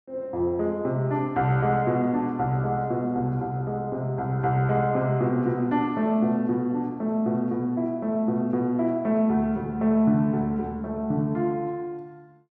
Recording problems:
none

